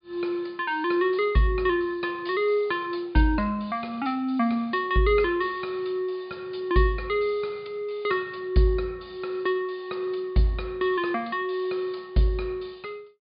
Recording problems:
treble cut off; nothing above 5 kHz

